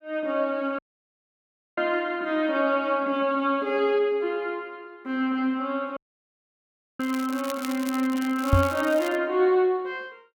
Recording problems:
dropout; at 1 s for 1 s and at 6 s for 1 s
microphone bump; at 2 s and at 8.5 s; peak +8 dB vs average level
crackling; from 7 to 9 s; loose cable, SNR 15 dB

